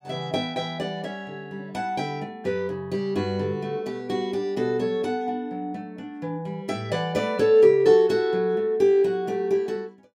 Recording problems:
none

